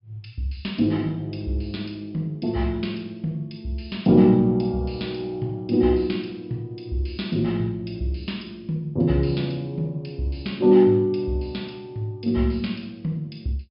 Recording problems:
treble cut off; nothing above 5.5 kHz

